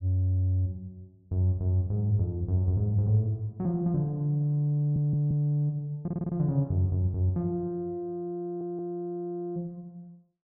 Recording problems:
audio stuttering; at 5 s, at 6 s and at 8.5 s

